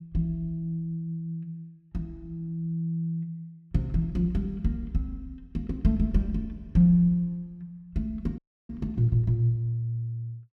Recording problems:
audio freezing; at 8.5 s

